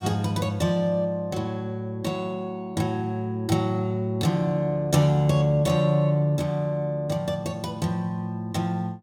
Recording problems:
none

